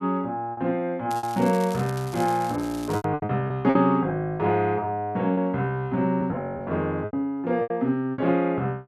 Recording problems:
lost packets; 8% of the sound replaced, filled with repeated pitch periods
crackling; from 1 to 3 s; loose cable, SNR 18 dB

